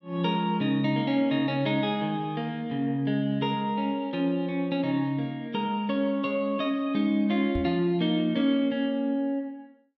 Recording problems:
microphone bump; at 7.5 s; peak -2 dB vs average level

